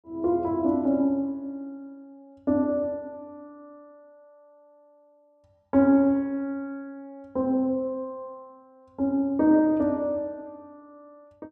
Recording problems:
none

